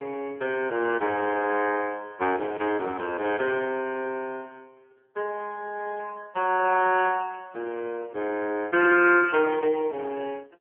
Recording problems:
phone line; 320 Hz to 3 kHz, AMR-NB

